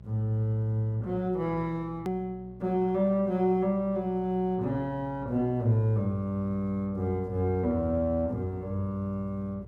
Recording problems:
electrical hum; 60 Hz, harmonics up to 600 Hz, SNR 19 dB
hard cut with a click; at 2 s

